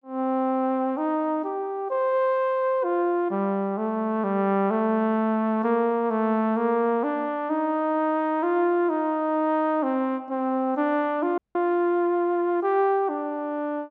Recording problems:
audio cutting out; at 11 s

